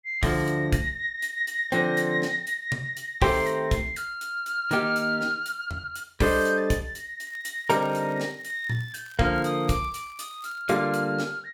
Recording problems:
crackling; from 7.5 to 11 s; loose cable, SNR 28 dB

